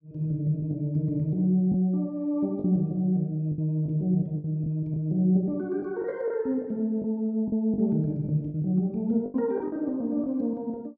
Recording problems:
lost packets; 7% of the sound replaced, filled with the last packet

